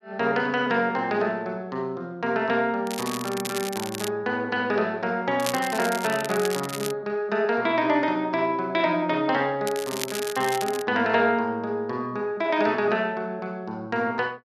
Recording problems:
crackle; from 3 to 4 s, from 5.5 to 7 s and from 9.5 to 11 s; loose cable, SNR 9 dB

